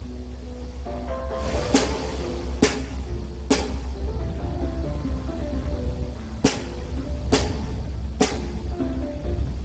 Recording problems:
codec artefacts; Speex, log-spectral distance 4 dB, nothing above 7.6 kHz
rumble; below 130 Hz, strongest tone 64 Hz, SNR 5 dB
wind on the microphone; below 2.6 kHz, SNR 11 dB

